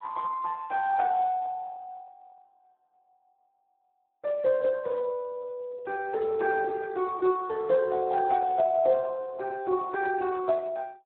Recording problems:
phone line; 280 Hz to 2.6 kHz, Speex

